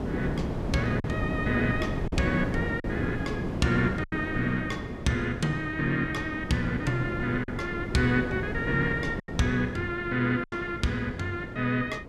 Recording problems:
wind noise; below 390 Hz, SNR 5 dB
packet loss; 3% of the sound replaced, filled with silence

